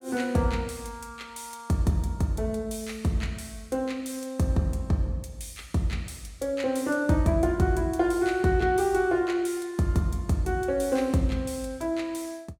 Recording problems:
none

